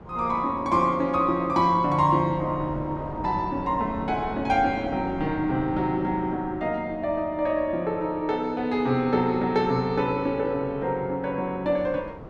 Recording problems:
wind noise; below 560 Hz, SNR 16 dB

